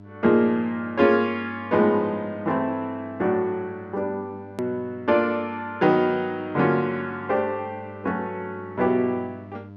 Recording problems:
hum; 50 Hz, harmonics up to 1 kHz, SNR 20 dB
hard cut with a click; at 4.5 s

